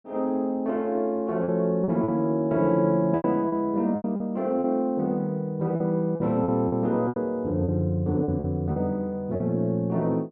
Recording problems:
lost packets; 8% of the sound replaced, filled with repeated pitch periods

